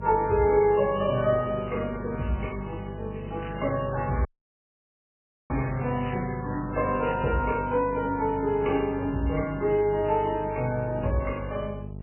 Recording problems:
lossy compression; MP3, then AAC, log-spectral distance 5 dB, nothing above 3 kHz
mains hum; 50 Hz, harmonics up to 850 Hz, SNR 12 dB
crackling; at 1 s and from 3.5 to 7.5 s; loose cable, SNR 19 dB
audio cutting out; at 4.5 s for 1.5 s

